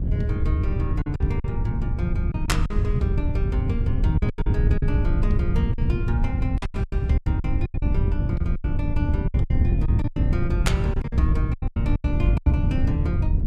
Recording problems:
wind on the microphone; below 110 Hz, SNR -6 dB
lost packets; 12% of the sound replaced, filled with silence

